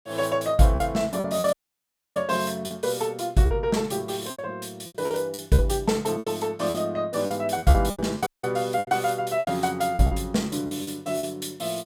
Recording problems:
lost packets; 11% of the sound replaced, filled with repeated pitch periods
audio cutting out; at 1.5 s for 0.5 s and at 8.5 s

